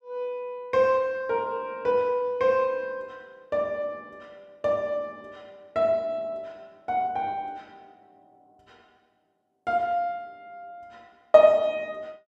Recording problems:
none

